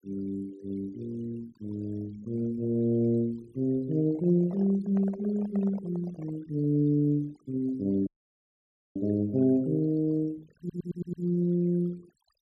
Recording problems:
noise reduction artefacts; signal-to-artefact ratio 24 dB
microphone handling noise; from 4 to 6.5 s; peak -10 dB vs average level
dropout; at 8 s for 1 s
audio stuttering; at 11 s

